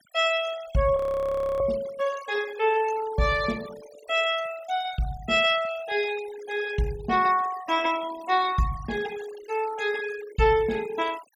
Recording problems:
noise reduction artefacts; signal-to-artefact ratio 17 dB
frozen audio; at 1 s for 0.5 s

